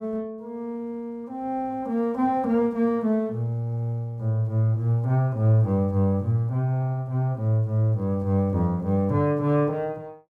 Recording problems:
none

